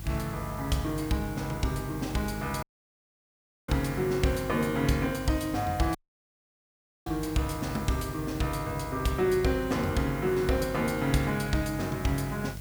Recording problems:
electrical hum; 50 Hz, harmonics up to 500 Hz, SNR 13 dB
background hiss; slope -1 dB per octave, SNR 17 dB
dropout; at 2.5 s for 1 s and at 6 s for 1 s

